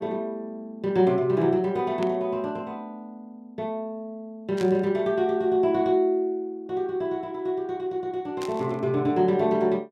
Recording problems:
burst of static; at 2 s, at 4.5 s and at 8.5 s; peak -9 dB vs average level

